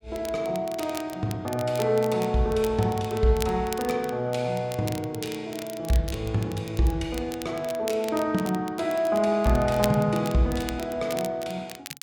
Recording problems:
crackle; vinyl, SNR 15 dB

